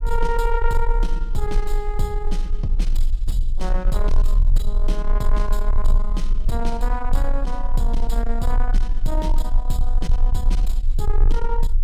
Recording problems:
distortion; soft clipping, signal-to-distortion ratio 11 dB
low-frequency rumble; below 34 Hz, strongest tone 24 Hz, SNR -4 dB

